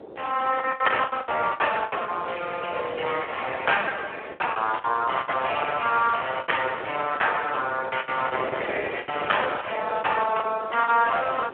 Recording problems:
telephone audio; 340 Hz to 3.3 kHz, Speex
wind noise; below 580 Hz, SNR 14 dB
lost packets; 12% of the sound replaced, filled with the last packet

